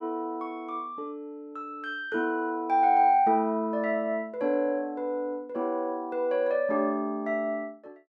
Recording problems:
none

